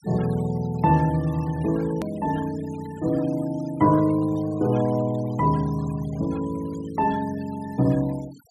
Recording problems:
denoising artefacts; signal-to-artefact ratio 22 dB
click at an edit; at 2 s

